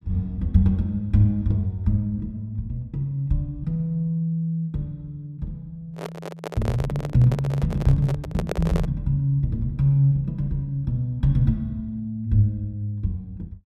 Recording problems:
handling noise; from 6 to 9 s; peak 0 dB vs average level

